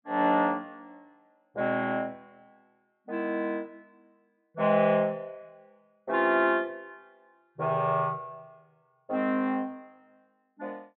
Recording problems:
low-pass filter; nothing above 4 kHz

